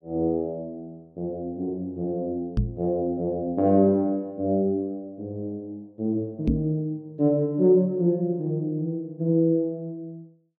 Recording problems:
microphone thump; at 2.5 s and at 6.5 s; peak +5 dB vs average level

